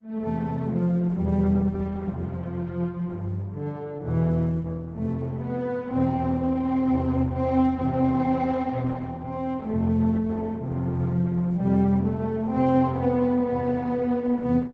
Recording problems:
lossy compression; Opus, log-spectral distance 2 dB

